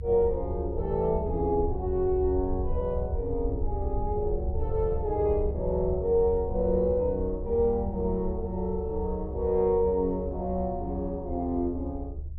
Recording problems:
rumble; below 74 Hz, SNR 7 dB

